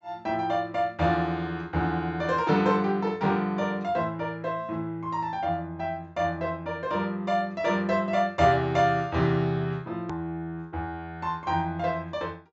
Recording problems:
low-pass filter; nothing above 8 kHz
click at an edit; at 10 s

